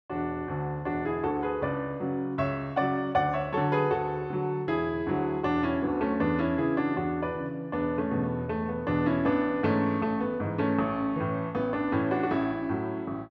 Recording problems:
none

